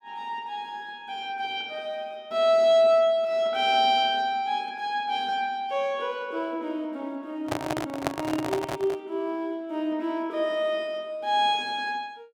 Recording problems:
microphone handling noise; from 7.5 to 9 s; peak +4 dB vs average level

